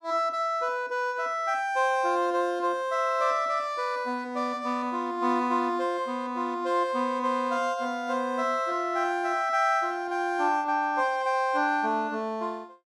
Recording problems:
none

